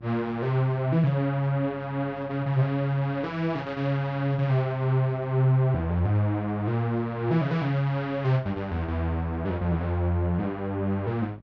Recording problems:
hum; 50 Hz, harmonics up to 750 Hz, SNR 24 dB

